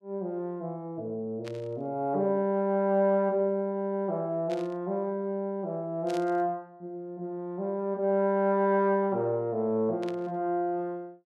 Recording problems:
static burst; 4 times, first at 1.5 s; peak -10 dB vs average level

